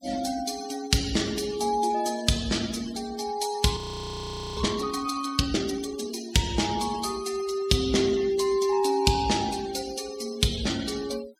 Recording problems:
noise reduction artefacts; signal-to-artefact ratio 14 dB
audio freezing; at 4 s for 1 s

